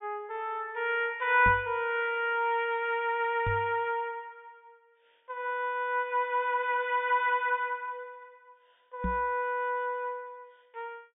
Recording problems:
treble cut off; nothing above 3.7 kHz
microphone thump; at 1.5 s, at 3.5 s and at 9 s; peak -1 dB vs average level

